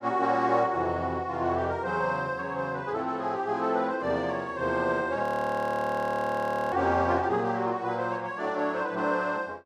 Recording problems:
frozen audio; at 5 s for 1.5 s

